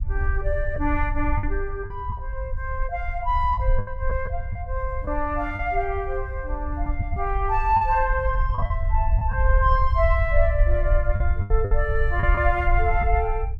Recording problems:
low-frequency rumble; below 66 Hz, SNR 1 dB
packet loss; 6% of the sound replaced, filled with the last packet

